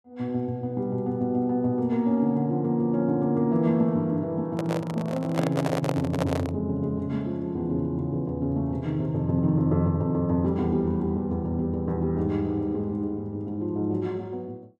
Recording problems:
microphone handling noise; from 4.5 to 6.5 s; peak +2 dB vs average level

